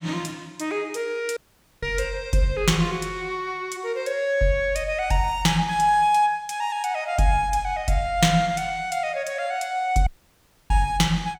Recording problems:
audio cutting out; at 1.5 s and at 10 s for 0.5 s

